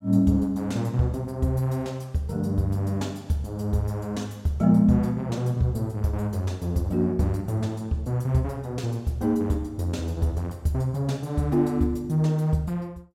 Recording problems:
none

